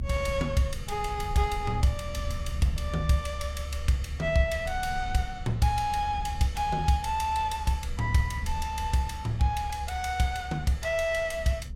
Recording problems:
rumble; below 74 Hz, SNR 8 dB

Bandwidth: 16 kHz